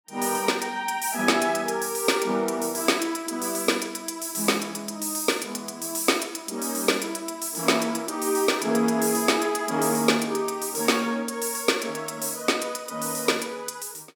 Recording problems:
none

